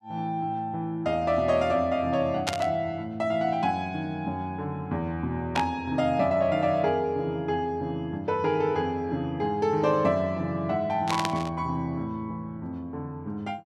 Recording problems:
burst of static; at 2.5 s, at 5.5 s and at 11 s; peak +3 dB vs average level

